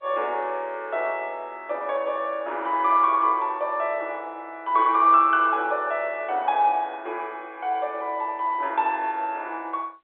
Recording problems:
phone line; 370 Hz to 3.6 kHz, G.711

